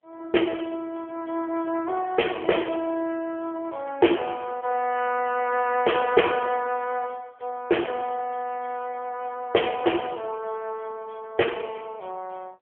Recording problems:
phone line; 280 Hz to 3.3 kHz, AMR-NB

